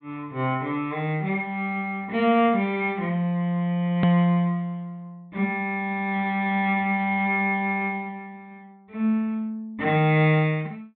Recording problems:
low-pass filter; nothing above 4 kHz
hard cut with a click; at 4 s

